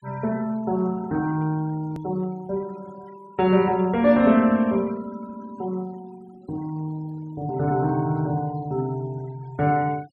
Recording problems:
noise reduction artefacts; signal-to-artefact ratio 25 dB
click at an edit; at 2 s

